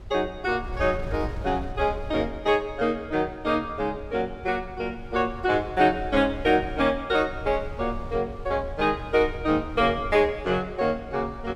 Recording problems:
wind noise; below 98 Hz, SNR 14 dB

